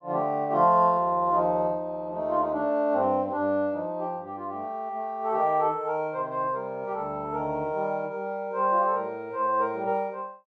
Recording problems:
none

